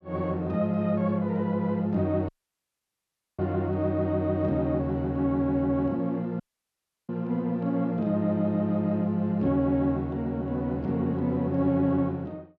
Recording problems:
dropout; at 2.5 s for 1 s and at 6.5 s for 0.5 s

